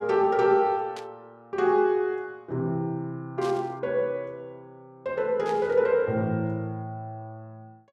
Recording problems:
static burst; at 1 s, at 3.5 s and at 5.5 s; peak -11 dB vs average level

